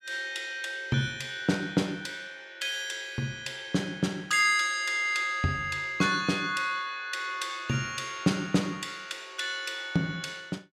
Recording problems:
none

